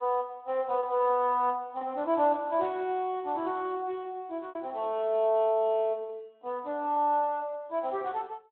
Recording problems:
telephone audio; 260 Hz to 3.8 kHz, Speex
lost packets; 2% of the sound replaced, filled with repeated pitch periods

